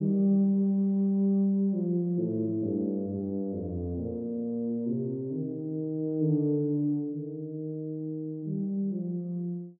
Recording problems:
treble missing; nothing above 4 kHz

